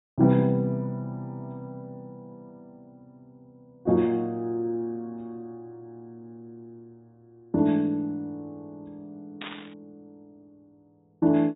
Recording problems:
treble cut off; nothing above 4 kHz
static burst; at 9.5 s; peak -7 dB vs average level

